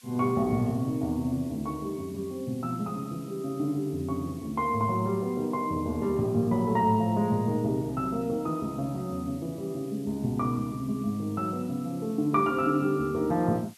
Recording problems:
background hiss; slope +5 dB per octave, SNR 25 dB

